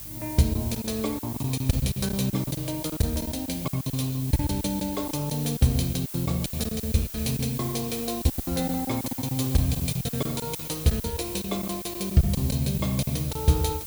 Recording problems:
hum; 50 Hz, harmonics up to 500 Hz, SNR 22 dB
background hiss; slope 0 dB per octave, SNR 8 dB
packet loss; 14% of the sound replaced, filled with silence

